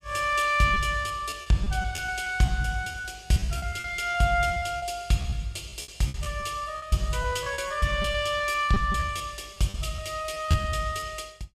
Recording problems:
packet loss; 14% of the sound replaced, filled with repeated pitch periods

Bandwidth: 14.5 kHz